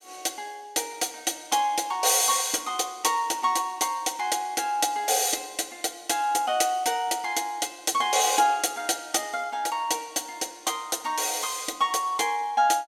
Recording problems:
none

